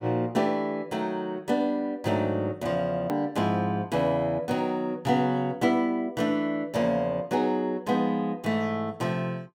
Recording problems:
click at an edit; at 3 s

